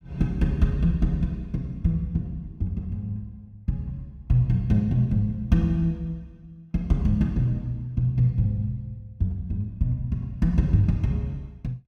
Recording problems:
none

